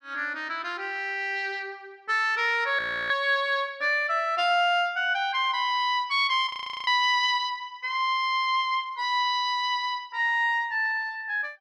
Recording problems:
audio freezing; at 3 s and at 6.5 s

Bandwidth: 13.5 kHz